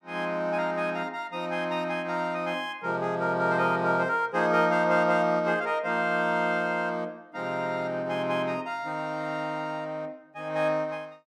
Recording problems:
none

